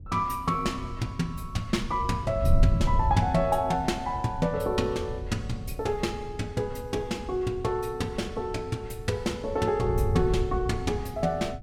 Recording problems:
wind on the microphone; below 100 Hz, SNR 5 dB

